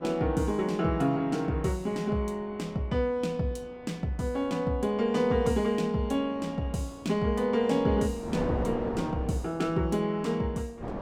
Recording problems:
wind noise; below 650 Hz, SNR 14 dB

